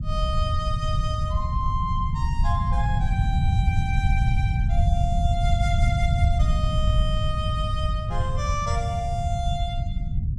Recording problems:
rumble; below 110 Hz, SNR -5 dB

